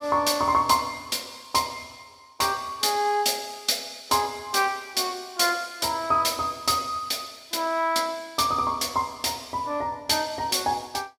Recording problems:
none

